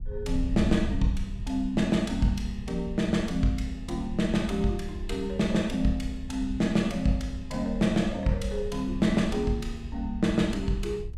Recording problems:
wind noise; below 74 Hz, SNR 10 dB

